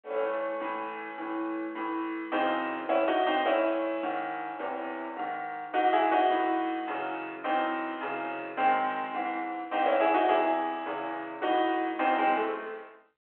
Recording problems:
telephone audio; 320 Hz to 3.7 kHz, G.726

